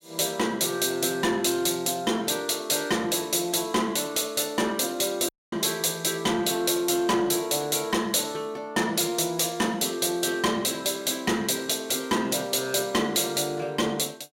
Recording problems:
distorted audio; soft clipping, signal-to-distortion ratio 10 dB
dropout; at 5.5 s

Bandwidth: 16 kHz